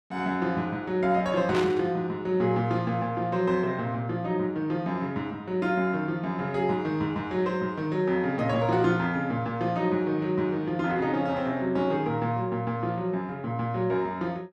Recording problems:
static burst; at 1.5 s; peak -3 dB vs average level

